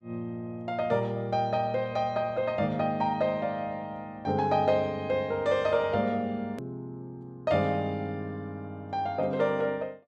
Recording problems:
edit click; at 6.5 s

